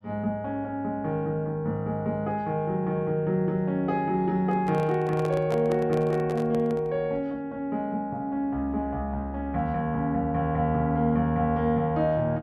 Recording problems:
microphone handling noise; from 4.5 to 7 s; peak -3 dB vs average level

